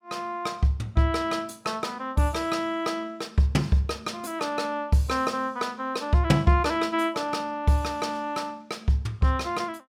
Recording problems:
none

